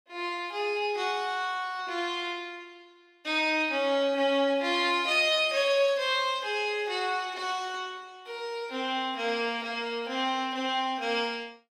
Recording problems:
none

